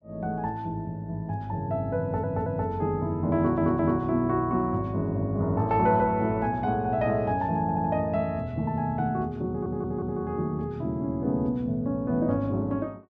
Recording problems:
audio stuttering; 4 times, first at 2 s

